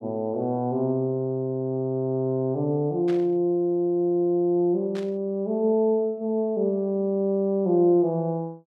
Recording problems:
burst of static; at 3 s and at 5 s; peak -13 dB vs average level

